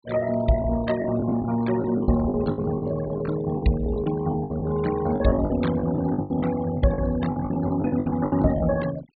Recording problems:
low-pass filter; nothing above 4.4 kHz
denoising artefacts; signal-to-artefact ratio 14 dB
packet loss; 15% of the sound replaced, filled with the last packet

